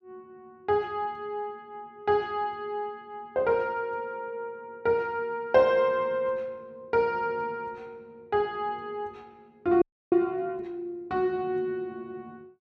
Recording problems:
frozen audio; at 10 s

